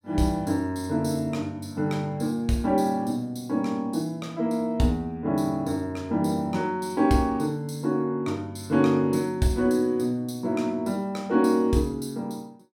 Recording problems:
none

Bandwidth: 16 kHz